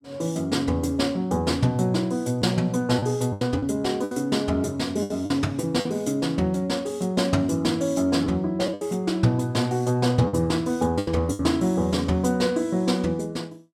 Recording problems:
lost packets; 5% of the sound replaced, filled with the last packet

